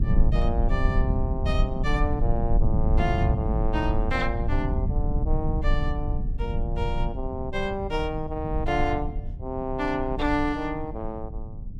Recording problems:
low-frequency rumble; below 86 Hz, SNR -1 dB

